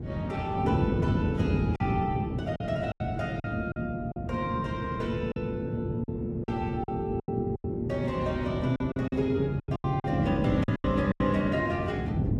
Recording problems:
lossy codec; Vorbis, then Opus, log-spectral distance 2 dB
wind on the microphone; below 250 Hz, SNR 1 dB
lost packets; 9% of the sound replaced, filled with silence

